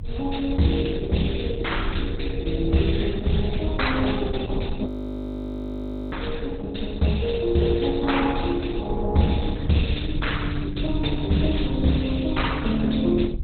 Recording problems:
lossy compression; MP2, then Opus, log-spectral distance 7 dB, nothing above 4 kHz
low-frequency rumble; below 86 Hz, SNR 7 dB
audio freezing; at 5 s for 1.5 s

